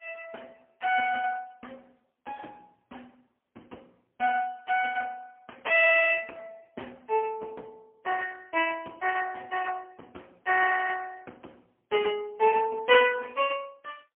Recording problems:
telephone audio; 280 Hz to 3.2 kHz, AMR-NB, then MP3

